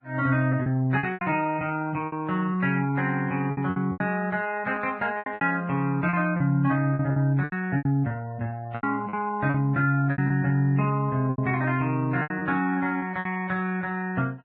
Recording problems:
codec artefacts; Vorbis, log-spectral distance 2 dB
lost packets; 11% of the sound replaced, filled with repeated pitch periods

